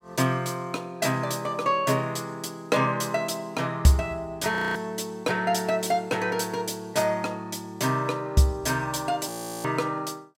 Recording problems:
audio freezing; at 4.5 s and at 9.5 s

